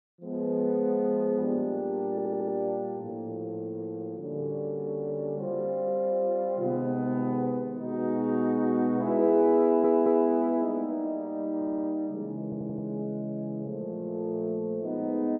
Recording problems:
audio stuttering; 4 times, first at 2 s

